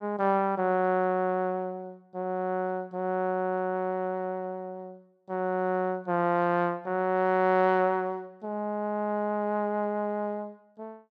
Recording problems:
none

